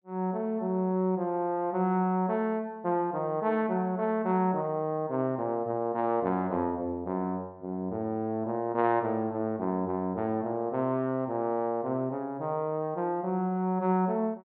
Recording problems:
treble cut off; nothing above 4.6 kHz

